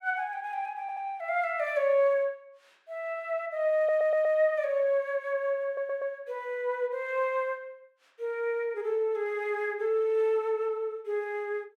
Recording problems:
stutter; at 1 s, at 4 s and at 5.5 s

